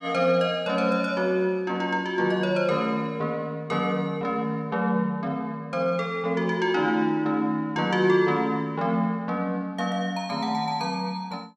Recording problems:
none

